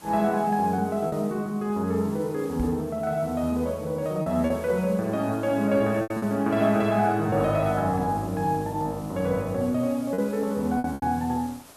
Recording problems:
background hiss; slope -3 dB per octave, SNR 22 dB
lost packets; 4% of the sound replaced, filled with repeated pitch periods
knock on the microphone; at 2.5 s; peak -1 dB vs average level

